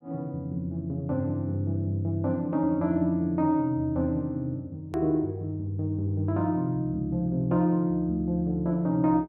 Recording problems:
hard cut with a click; at 5 s

